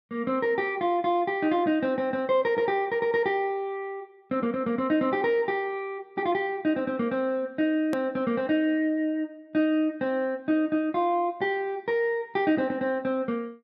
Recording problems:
click at an edit; at 8 s

